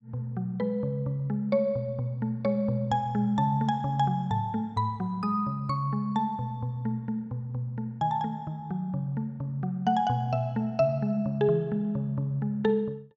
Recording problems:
none

